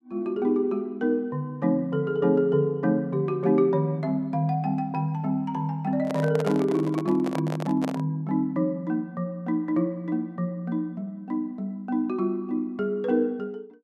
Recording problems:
handling noise; from 6 to 8 s; peak -1 dB vs average level

